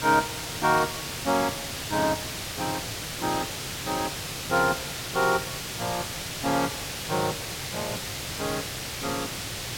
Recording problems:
hiss; slope -1 dB per octave, SNR 3 dB
crackle; at 2.5 s and from 5 to 9 s; loose cable, SNR 26 dB

